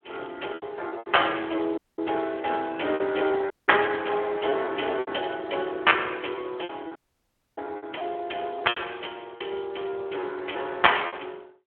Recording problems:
phone line; 280 Hz to 3.3 kHz, Speex
packet loss; 10% of the sound replaced, filled with repeated pitch periods
audio cutting out; at 2 s, at 3.5 s and at 7 s for 0.5 s

